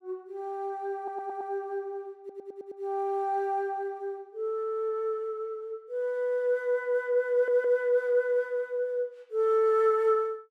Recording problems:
stutter; at 1 s, at 2 s and at 7.5 s

